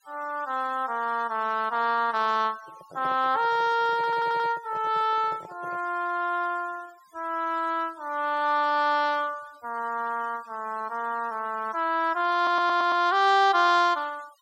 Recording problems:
noise reduction artefacts; signal-to-artefact ratio 25 dB
handling noise; from 2.5 to 6 s; peak -10 dB vs average level
audio stuttering; at 4 s and at 12 s

